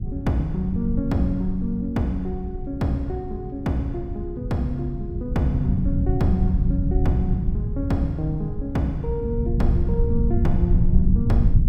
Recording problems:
low-frequency rumble; below 110 Hz, SNR 0 dB

